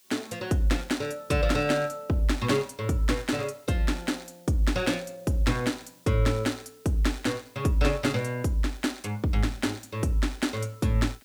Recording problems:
background hiss; SNR 28 dB

